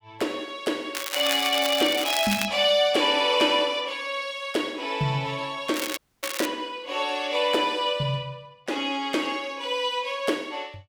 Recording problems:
crackling; from 1 to 2.5 s and at 5.5 s; loose cable, SNR 6 dB
audio cutting out; at 6 s

